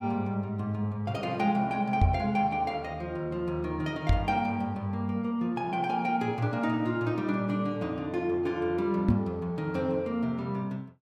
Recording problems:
knock on the microphone; at 2 s, at 4 s and at 9 s; peak +9 dB vs average level

